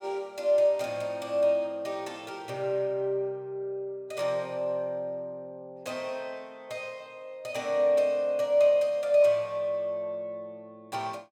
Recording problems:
none

